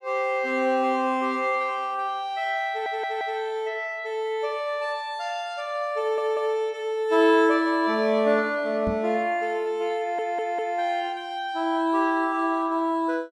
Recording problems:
audio stuttering; at 2.5 s, at 6 s and at 10 s
knock on the microphone; at 9 s; peak -2 dB vs average level

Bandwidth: 13 kHz